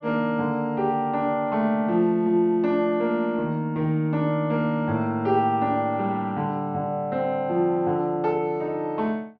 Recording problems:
low-pass filter; nothing above 6.2 kHz

